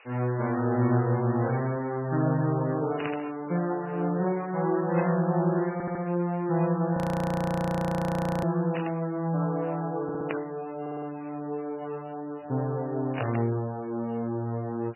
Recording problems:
codec artefacts; MP3, log-spectral distance 15 dB, nothing above 13.1 kHz
background hiss; SNR 28 dB
burst of static; 5 times, first at 3 s; peak -2 dB vs average level
stutter; at 5.5 s, at 10 s and at 11 s
audio freezing; at 7 s for 1.5 s

